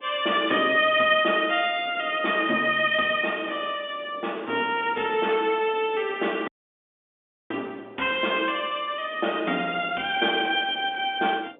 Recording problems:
phone line; 220 Hz to 3.6 kHz, G.711
wind noise; below 630 Hz, SNR 21 dB
audio cutting out; at 6.5 s for 1 s

